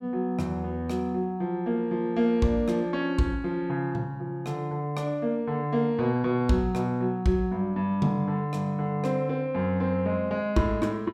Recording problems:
none

